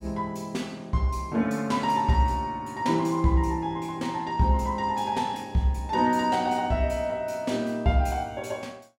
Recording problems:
none

